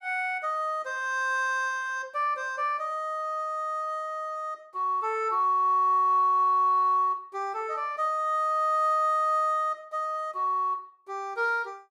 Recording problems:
none

